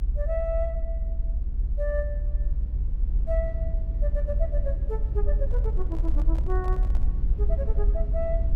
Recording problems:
rumble; below 58 Hz, SNR -7 dB
handling noise; from 5.5 to 7 s; peak -7 dB vs average level

